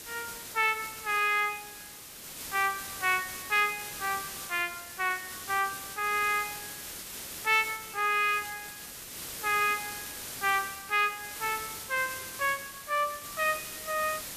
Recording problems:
background hiss; slope -1 dB per octave, SNR 9 dB

